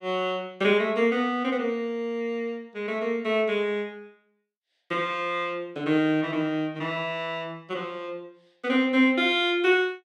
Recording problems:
none

